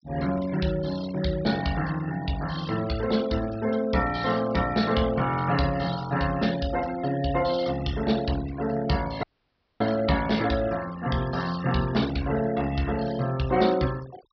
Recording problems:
treble missing; nothing above 5.5 kHz
noise reduction artefacts; signal-to-artefact ratio 15 dB
audio cutting out; at 9 s for 0.5 s

